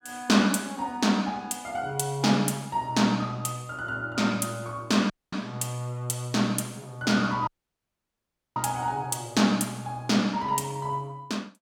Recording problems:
audio cutting out; at 5 s and at 7.5 s for 1 s

